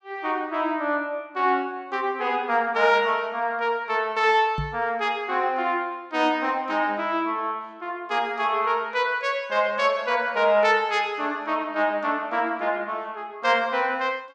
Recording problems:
microphone bump; at 4.5 s; peak -2 dB vs average level

